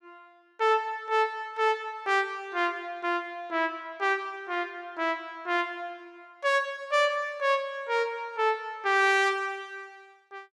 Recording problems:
none

